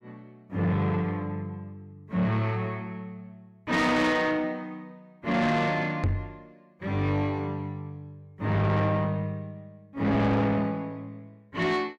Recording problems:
distorted audio; soft clipping, signal-to-distortion ratio 7 dB
knock on the microphone; at 6 s; peak +4 dB vs average level

